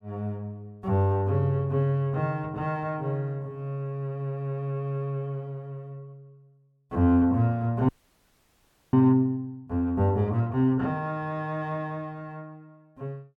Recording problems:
audio freezing; at 8 s for 1 s

